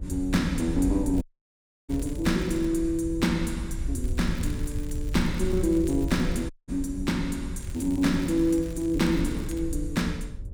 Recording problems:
hum; 60 Hz, harmonics up to 600 Hz, SNR 23 dB
wind noise; below 76 Hz, SNR 8 dB
crackle; from 1 to 2.5 s, from 4 to 6.5 s and from 7.5 to 9.5 s; loose cable, SNR 23 dB
dropout; at 1 s for 0.5 s and at 6.5 s

